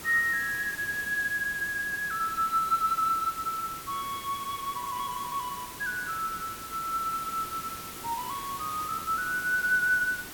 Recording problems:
background hiss; SNR 11 dB

